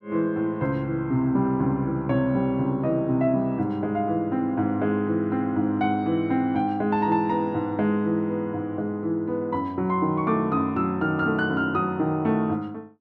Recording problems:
none

